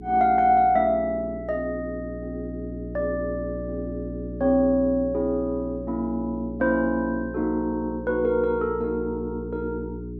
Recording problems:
mains hum; 60 Hz, harmonics up to 420 Hz, SNR 11 dB

